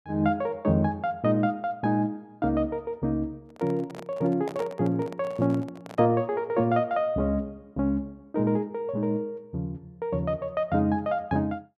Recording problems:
microphone handling noise; from 3.5 to 6 s; peak -6 dB vs average level

